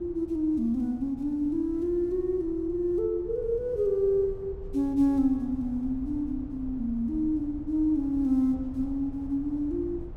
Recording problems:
rumble; below 110 Hz, SNR 16 dB

